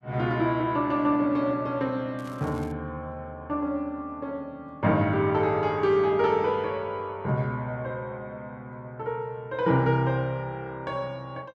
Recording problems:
crackling; at 2 s; loose cable, SNR 27 dB

